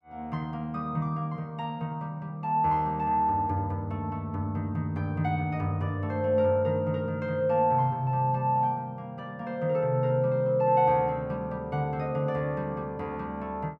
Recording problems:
none

